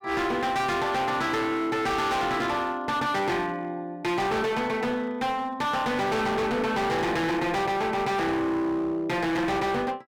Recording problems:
distortion; hard clipping, signal-to-distortion ratio 6 dB

